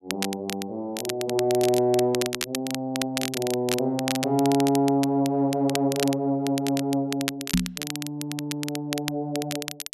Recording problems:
crackling; vinyl, SNR 8 dB
microphone bump; at 7.5 s; peak +6 dB vs average level

